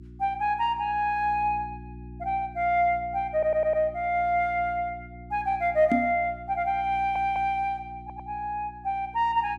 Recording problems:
mains hum; 60 Hz, harmonics up to 360 Hz, SNR 19 dB
stutter; at 3.5 s, at 7 s and at 8 s
microphone thump; at 6 s; peak +4 dB vs average level

